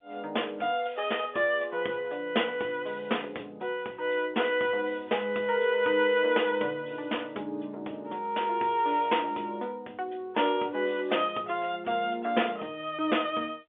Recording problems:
telephone audio; 320 Hz to 3.5 kHz, G.711

